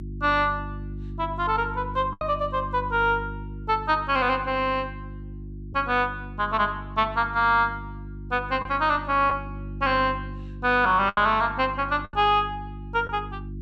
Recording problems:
electrical hum; 50 Hz, harmonics up to 350 Hz, SNR 13 dB
lost packets; 3% of the sound replaced, filled with the last packet

